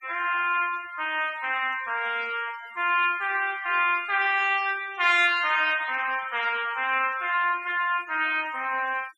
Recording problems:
denoising artefacts; signal-to-artefact ratio 20 dB

